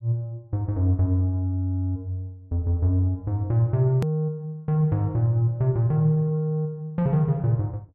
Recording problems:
hard cut with a click; at 4 s

